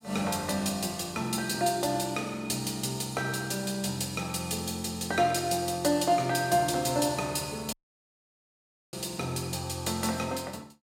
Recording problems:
audio cutting out; at 7.5 s for 1 s

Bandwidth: 16 kHz